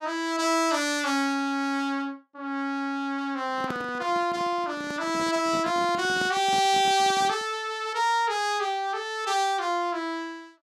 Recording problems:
handling noise; from 3.5 to 7.5 s; peak -5 dB vs average level

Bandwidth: 15 kHz